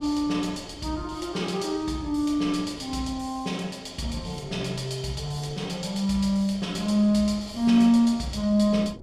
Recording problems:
wind on the microphone; below 350 Hz, SNR 21 dB

